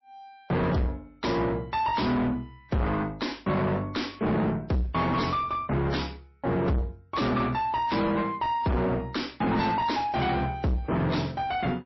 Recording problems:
codec artefacts; MP3, then MP3, log-spectral distance 3 dB, nothing above 5.7 kHz
distortion; soft clipping, signal-to-distortion ratio 5 dB

